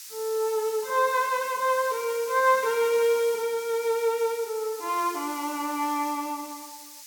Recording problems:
background hiss; slope +7 dB per octave, SNR 14 dB

